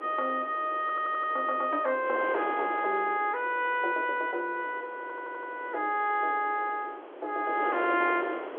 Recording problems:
telephone audio; 300 Hz to 3.4 kHz, G.711
wind on the microphone; below 870 Hz, SNR 11 dB
stutter; at 1 s and at 5 s

